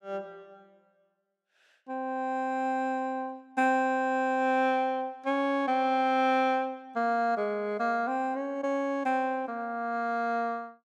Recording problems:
none

